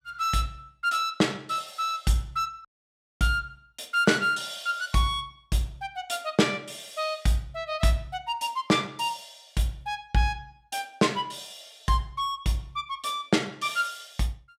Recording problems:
dropout; at 2.5 s for 0.5 s

